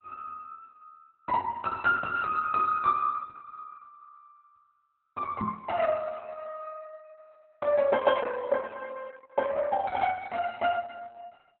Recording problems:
codec artefacts; Opus, log-spectral distance 3 dB
microphone thump; at 5.5 s; peak -2 dB vs average level

